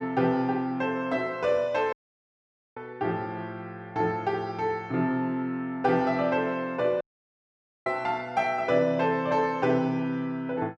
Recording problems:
audio cutting out; at 2 s for 1 s and at 7 s for 1 s

